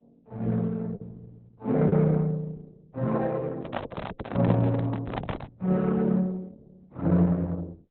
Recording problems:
codec artefacts; Opus, log-spectral distance 3 dB, nothing above 4 kHz
lost packets; 1.1% of the sound replaced, filled with the last packet
handling noise; from 3.5 to 5.5 s; peak +1 dB vs average level

